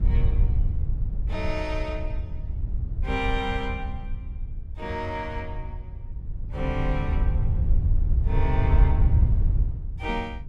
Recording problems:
wind noise; below 84 Hz, SNR -5 dB

